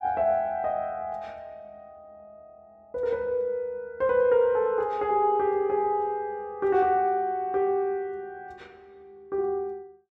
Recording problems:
none

